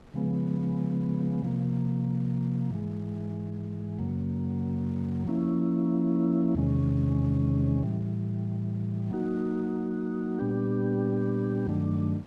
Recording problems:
wind on the microphone; below 720 Hz, SNR 24 dB

